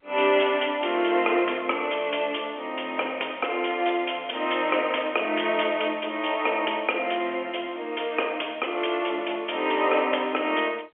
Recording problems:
phone line; 320 Hz to 3.3 kHz, G.711

